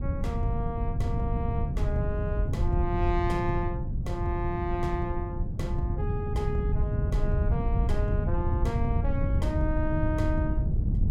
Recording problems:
wind noise; below 120 Hz, SNR -4 dB

